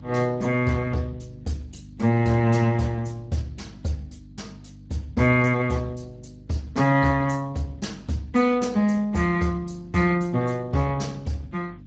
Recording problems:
lossy codec; Speex, log-spectral distance 3 dB, nothing above 7.3 kHz
hum; 50 Hz, harmonics up to 300 Hz, SNR 21 dB

